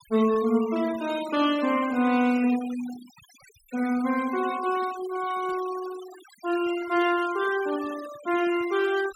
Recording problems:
noise reduction artefacts; signal-to-artefact ratio 17 dB

